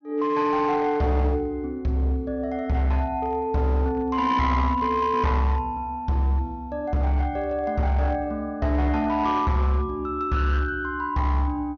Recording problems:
treble missing; nothing above 6.5 kHz
distorted audio; hard clipping, signal-to-distortion ratio 12 dB

